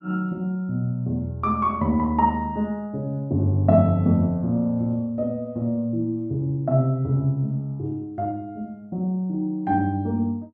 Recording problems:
none

